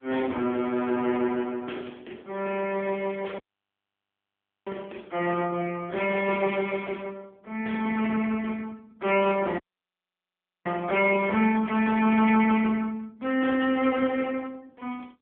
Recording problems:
telephone audio; 240 Hz to 3.3 kHz, AMR-NB
audio cutting out; at 3.5 s for 1.5 s and at 9.5 s for 1 s

